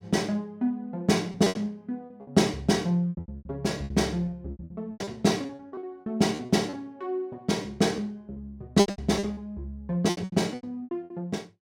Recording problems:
packet loss; 15% of the sound replaced, filled with repeated pitch periods

